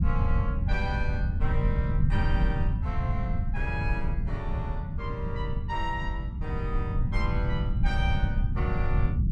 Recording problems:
low-frequency rumble; below 120 Hz, SNR -7 dB

